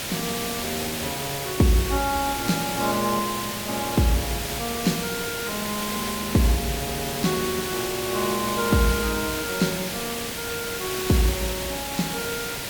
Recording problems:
hiss; SNR 2 dB

